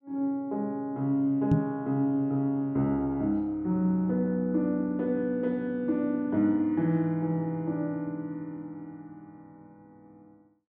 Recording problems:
knock on the microphone; at 1.5 s; peak +7 dB vs average level

